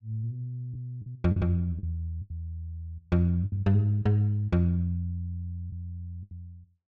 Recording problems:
lost packets; 6% of the sound replaced, filled with the last packet

